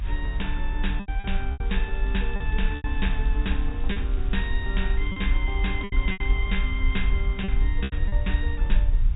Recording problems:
treble missing; nothing above 4 kHz
hiss; SNR 17 dB
low-frequency rumble; below 54 Hz, SNR -4 dB
packet loss; 8% of the sound replaced, filled with repeated pitch periods
crackle; from 1.5 to 3.5 s and from 4 to 7 s; loose cable, SNR 23 dB

